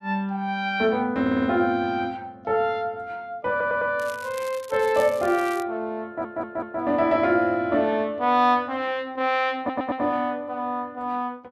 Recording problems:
stutter; 4 times, first at 1 s
crackling; from 4 to 5.5 s; loose cable, SNR 19 dB

